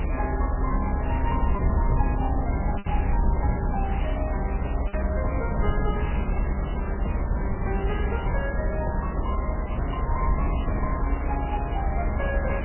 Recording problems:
lossy compression; MP3, log-spectral distance 7 dB, nothing above 2.5 kHz
hiss; SNR 2 dB
rumble; below 68 Hz, SNR -4 dB
wind noise; below 590 Hz, SNR 13 dB
packet loss; 1.6% of the sound replaced, filled with repeated pitch periods

